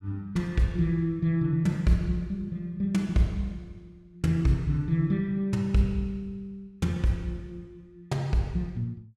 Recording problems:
none

